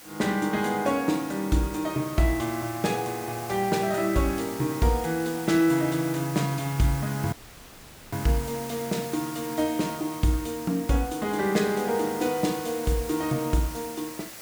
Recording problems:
hiss; slope -2 dB per octave, SNR 13 dB
dropout; at 7.5 s for 1 s

